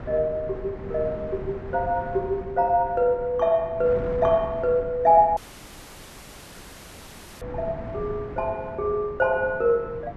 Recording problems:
wind on the microphone; below 380 Hz, SNR 14 dB
dropout; at 5.5 s for 2 s

